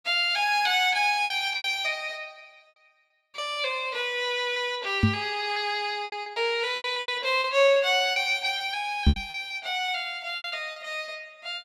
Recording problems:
lost packets; 10% of the sound replaced, filled with repeated pitch periods
knock on the microphone; at 5 s and at 9 s; peak +9 dB vs average level

